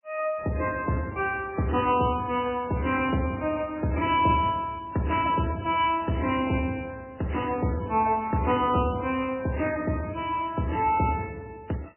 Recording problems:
codec artefacts; MP3, then MP3, log-spectral distance 4 dB, nothing above 2.7 kHz

